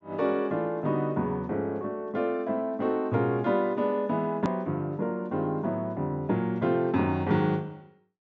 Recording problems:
treble cut off; nothing above 8 kHz
click at an edit; at 4.5 s

